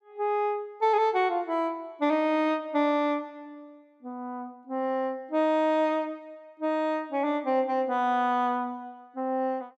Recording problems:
none

